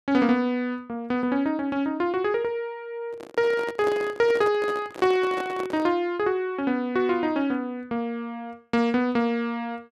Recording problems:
microphone handling noise; from 3 to 6 s; peak -4 dB vs average level

